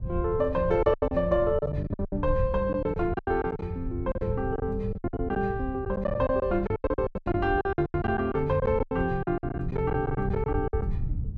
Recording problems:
rumble; below 100 Hz, SNR 8 dB
packet loss; 18% of the sound replaced, filled with silence

